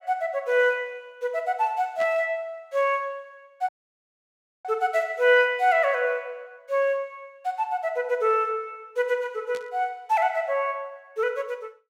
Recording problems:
static burst; at 2 s and at 9.5 s; peak -11 dB vs average level
dropout; at 3.5 s for 1 s

